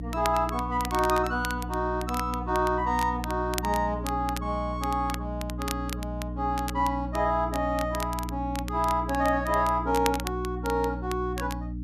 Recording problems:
mains hum; 60 Hz, harmonics up to 300 Hz, SNR 7 dB
crackling; vinyl, SNR 13 dB

